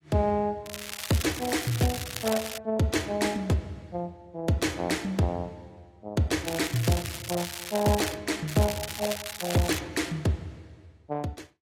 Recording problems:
codec artefacts; AAC, log-spectral distance 5 dB, nothing above 14.7 kHz
crackling; from 0.5 to 2.5 s, from 6.5 to 8 s and from 8.5 to 10 s; loose cable, SNR 7 dB

